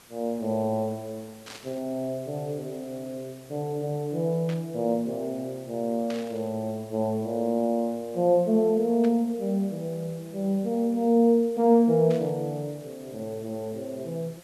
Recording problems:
background hiss; slope -2 dB per octave, SNR 25 dB
static burst; 5 times, first at 1.5 s; peak -10 dB vs average level

